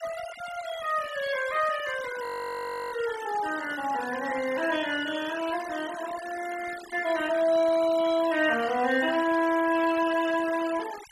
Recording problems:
noise reduction artefacts; signal-to-artefact ratio 14 dB
audio freezing; at 2 s for 0.5 s

